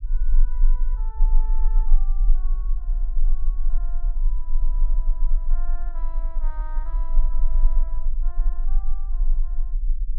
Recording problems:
low-frequency rumble; below 32 Hz, strongest tone 20 Hz, SNR -22 dB

